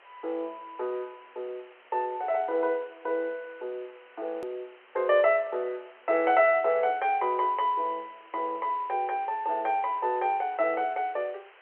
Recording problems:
telephone audio; 340 Hz to 3.2 kHz, G.711
background hiss; SNR 26 dB
edit click; at 4.5 s

